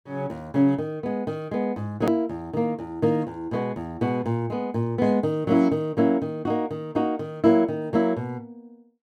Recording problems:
click at an edit; at 2 s

